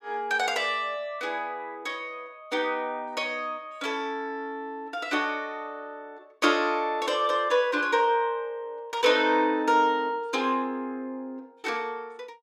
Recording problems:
none

